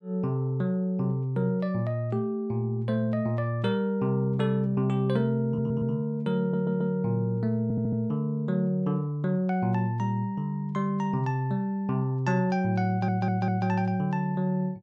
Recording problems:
stutter; 4 times, first at 5.5 s

